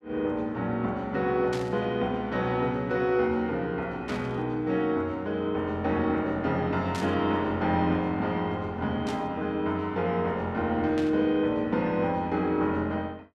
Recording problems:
static burst; 5 times, first at 1.5 s; peak -7 dB vs average level

